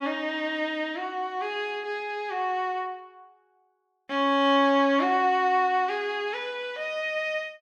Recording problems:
none

